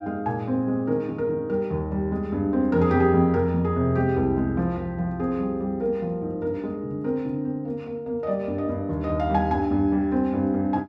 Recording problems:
none

